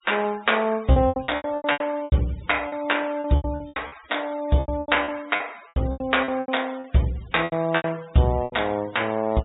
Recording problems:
treble missing; nothing above 4 kHz
noise reduction artefacts; signal-to-artefact ratio 22 dB
packet loss; 17% of the sound replaced, filled with repeated pitch periods

